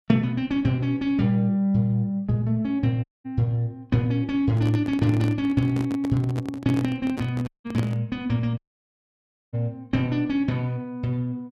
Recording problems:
audio cutting out; at 3 s, at 7.5 s and at 8.5 s for 1 s
handling noise; from 4.5 to 8 s; peak -1 dB vs average level

